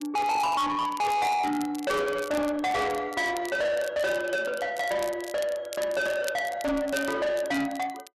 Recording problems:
distortion; soft clipping, signal-to-distortion ratio 7 dB
crackle; vinyl, SNR 17 dB

